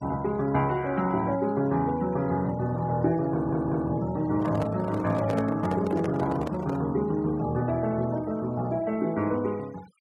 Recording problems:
denoising artefacts; signal-to-artefact ratio 22 dB
audio stuttering; at 3.5 s
handling noise; from 4.5 to 7 s; peak -2 dB vs average level

